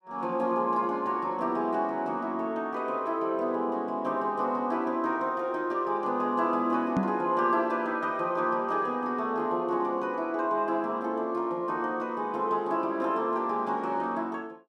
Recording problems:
knock on the microphone; at 7 s; peak +6 dB vs average level

